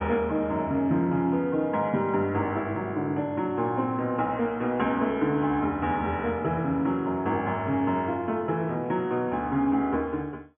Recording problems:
treble cut off; nothing above 3.4 kHz

